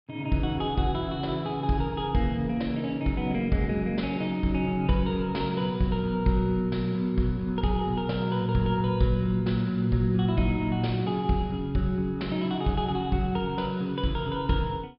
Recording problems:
low-pass filter; nothing above 5.5 kHz

